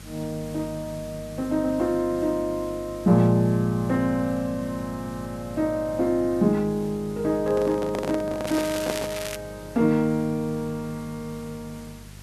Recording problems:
electrical hum; 50 Hz, harmonics up to 450 Hz, SNR 19 dB
hiss; slope -1 dB per octave, SNR 22 dB
handling noise; from 7.5 to 9 s; peak 0 dB vs average level
crackling; at 8.5 s; loose cable, SNR 10 dB

